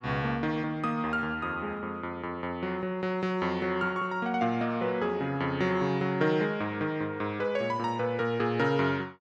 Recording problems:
none

